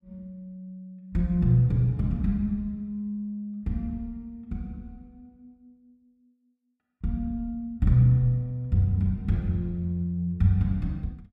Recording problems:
none

